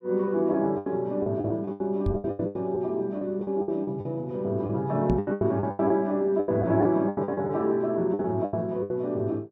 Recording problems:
lost packets; 16% of the sound replaced, filled with the last packet
microphone thump; at 2 s and at 5 s; peak +3 dB vs average level

